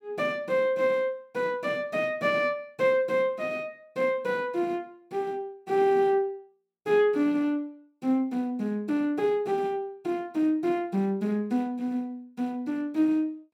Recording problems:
none

